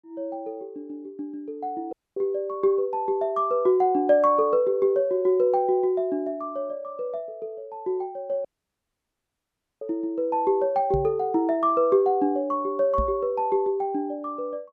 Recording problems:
audio cutting out; at 2 s and at 8.5 s for 1.5 s
knock on the microphone; at 11 s and at 13 s; peak -1 dB vs average level

